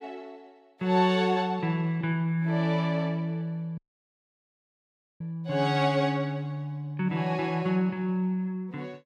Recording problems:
dropout; at 4 s for 1.5 s

